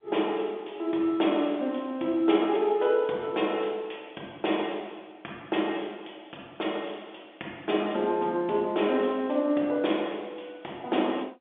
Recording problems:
telephone audio; 240 Hz to 3.6 kHz, G.711

